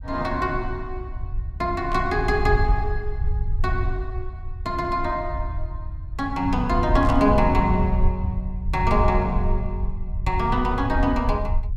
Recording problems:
low-frequency rumble; below 76 Hz, SNR 4 dB
burst of static; at 2 s and at 7 s; peak -12 dB vs average level

